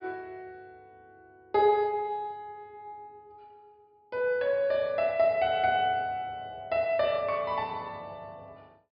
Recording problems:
treble missing; nothing above 5.5 kHz

